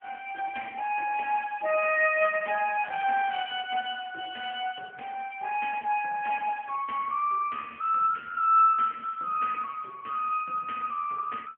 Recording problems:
phone line; 340 Hz to 3.1 kHz, AMR-NB

